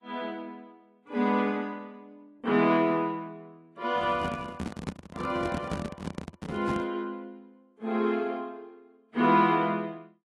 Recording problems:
codec artefacts; AAC, log-spectral distance 2 dB
microphone handling noise; from 4 to 7 s; peak -1 dB vs average level

